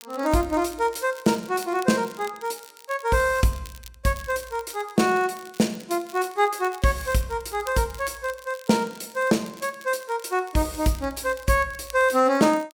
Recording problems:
crackling; vinyl, SNR 22 dB

